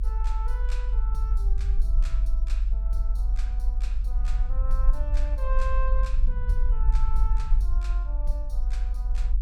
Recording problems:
low-frequency rumble; below 46 Hz, strongest tone 24 Hz, SNR -14 dB

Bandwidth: 17 kHz